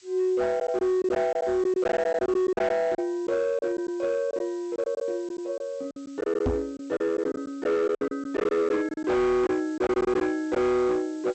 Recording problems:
low-pass filter; nothing above 8 kHz
distortion; hard clipping, signal-to-distortion ratio 10 dB
hiss; slope +5 dB per octave, SNR 27 dB
packet loss; 10% of the sound replaced, filled with silence
microphone thump; at 6.5 s; peak +3 dB vs average level

